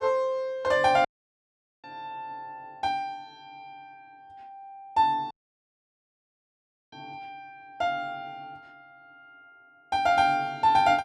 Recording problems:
dropout; at 1 s for 1 s and at 5.5 s for 1.5 s

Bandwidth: 13.5 kHz